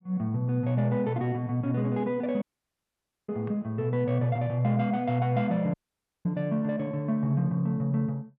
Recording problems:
dropout; at 2.5 s for 1 s and at 5.5 s for 0.5 s

